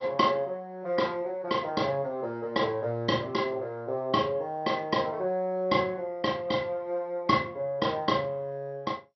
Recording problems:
codec artefacts; MP2, log-spectral distance 2 dB, nothing above 5.7 kHz

